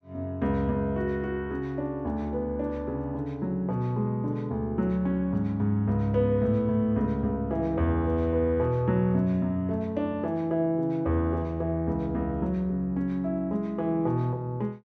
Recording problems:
none

